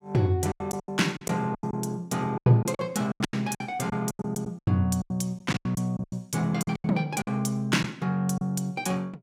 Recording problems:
lost packets; 15% of the sound replaced, filled with silence

